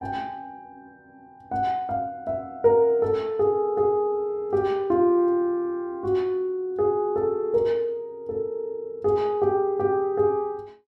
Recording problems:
none

